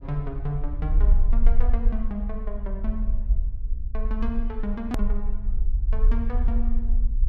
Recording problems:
low-frequency rumble; below 44 Hz, strongest tone 24 Hz, SNR -7 dB
hard cut with a click; at 5 s

